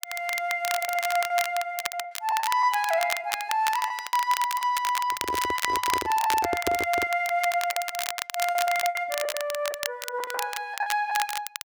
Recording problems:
crackling; vinyl, SNR 6 dB
lost packets; 11% of the sound replaced, filled with the last packet
microphone handling noise; from 5 to 7 s; peak +2 dB vs average level

